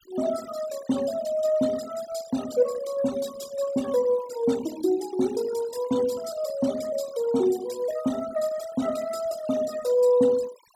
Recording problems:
denoising artefacts; signal-to-artefact ratio 17 dB

